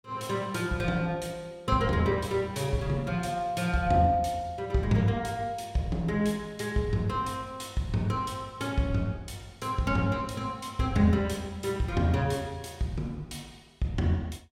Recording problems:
none

